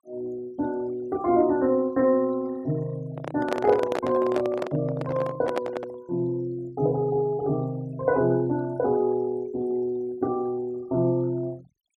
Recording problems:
noise reduction artefacts; signal-to-artefact ratio 24 dB
handling noise; from 3 to 6 s; peak +2 dB vs average level

